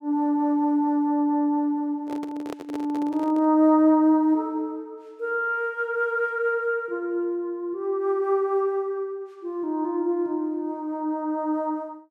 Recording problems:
microphone handling noise; from 2 to 3.5 s; peak -7 dB vs average level

